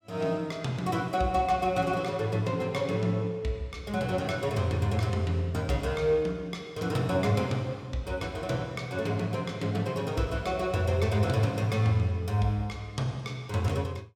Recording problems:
none

